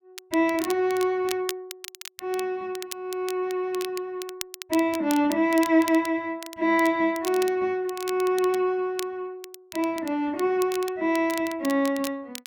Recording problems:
crackle; vinyl, SNR 14 dB

